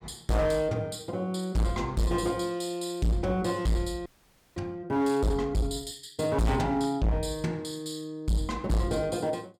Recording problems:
distorted audio; hard clipping, signal-to-distortion ratio 7 dB
audio freezing; at 4 s for 0.5 s

